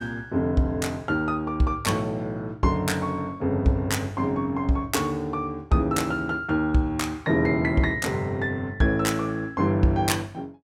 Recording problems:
none

